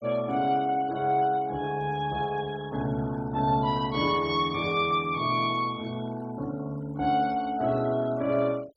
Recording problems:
noise reduction artefacts; signal-to-artefact ratio 23 dB

